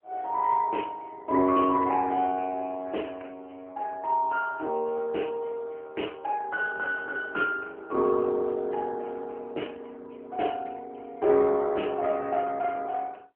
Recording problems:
telephone audio; 240 Hz to 2.9 kHz, AMR-NB

